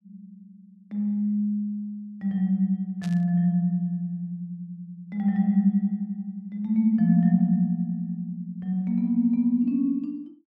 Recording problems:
burst of static; at 3 s; peak -14 dB vs average level

